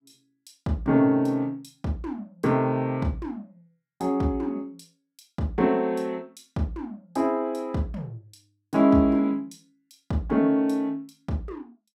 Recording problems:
none

